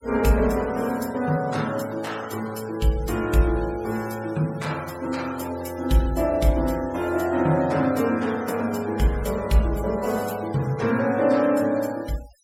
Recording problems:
denoising artefacts; signal-to-artefact ratio 19 dB

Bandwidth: 16.5 kHz